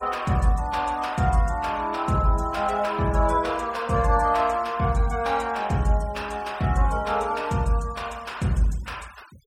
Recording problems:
denoising artefacts; signal-to-artefact ratio 23 dB

